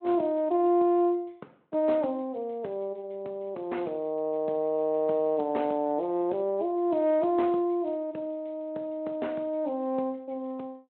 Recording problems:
phone line; 240 Hz to 3.4 kHz, Speex

